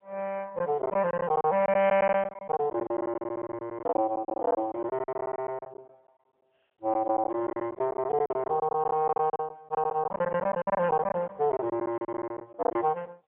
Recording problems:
telephone audio; 260 Hz to 3.9 kHz, AMR-NB, then MP3
packet loss; 17% of the sound replaced, filled with silence

